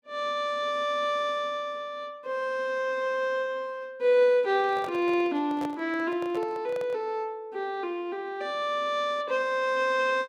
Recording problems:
microphone handling noise; from 4.5 to 7 s; peak -7 dB vs average level

